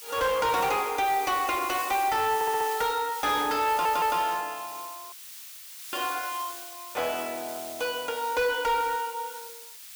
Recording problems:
distortion; soft clipping, signal-to-distortion ratio 11 dB
background hiss; slope +5 dB per octave, SNR 11 dB
audio stuttering; at 2.5 s and at 3.5 s
dropout; at 5 s for 1 s

